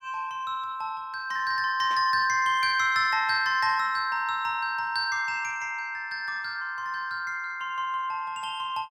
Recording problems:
static burst; at 2 s; peak -14 dB vs average level

